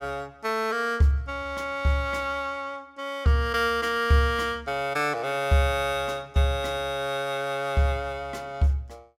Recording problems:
none

